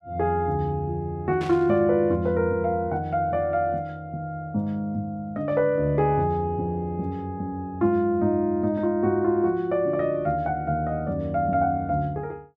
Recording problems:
static burst; at 1.5 s; peak -10 dB vs average level

